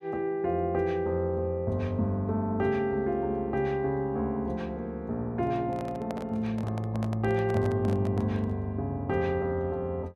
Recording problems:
handling noise; from 5.5 to 8.5 s; peak -5 dB vs average level

